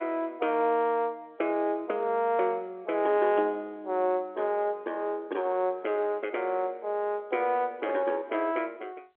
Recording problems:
phone line; 280 Hz to 3.7 kHz, G.711

